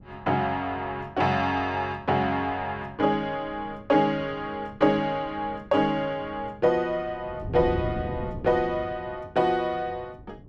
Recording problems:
wind noise; below 230 Hz, SNR 15 dB

